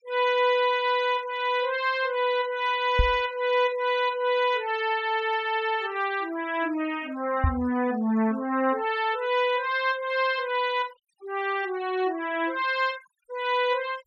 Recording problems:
denoising artefacts; signal-to-artefact ratio 21 dB
knock on the microphone; at 3 s and at 7.5 s; peak +5 dB vs average level

